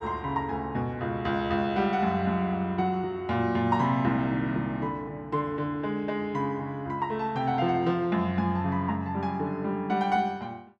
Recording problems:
none

